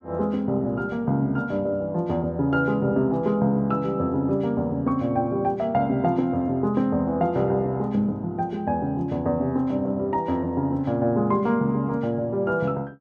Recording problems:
none

